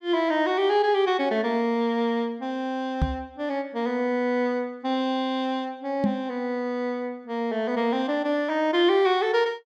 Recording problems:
knock on the microphone; at 3 s and at 6 s; peak +4 dB vs average level

